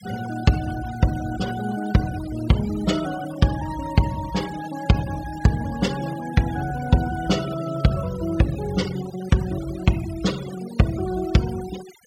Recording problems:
denoising artefacts; signal-to-artefact ratio 15 dB

